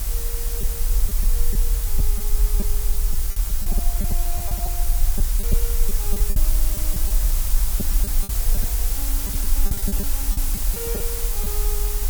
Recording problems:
background hiss; SNR -14 dB
rumble; below 44 Hz, SNR -16 dB
packet loss; 9% of the sound replaced, filled with repeated pitch periods

